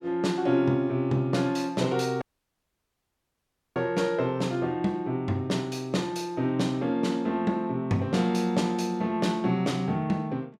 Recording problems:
audio cutting out; at 2 s for 1.5 s

